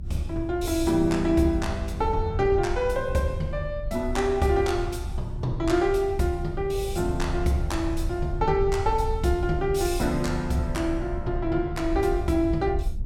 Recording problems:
rumble; below 82 Hz, SNR 8 dB

